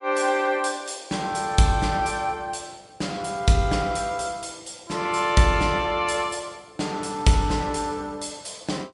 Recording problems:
lossy codec; MP3, log-spectral distance 4 dB, nothing above 10.7 kHz

